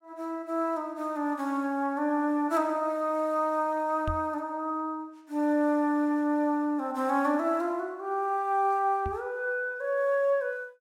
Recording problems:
microphone thump; at 4 s and at 9 s; peak -2 dB vs average level

